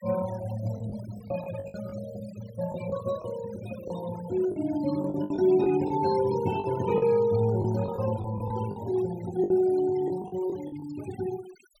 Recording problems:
denoising artefacts; signal-to-artefact ratio 16 dB
lost packets; 9% of the sound replaced, filled with the last packet

